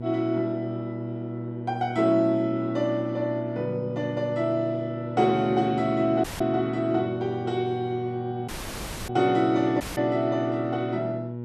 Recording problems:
electrical hum; 60 Hz, harmonics up to 960 Hz, SNR 8 dB
dropout; at 6 s, at 8.5 s for 0.5 s and at 10 s

